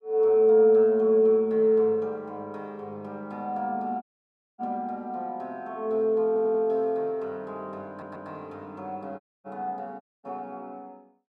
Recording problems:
audio cutting out; at 4 s for 0.5 s, at 9 s and at 10 s
audio stuttering; at 6.5 s and at 8 s

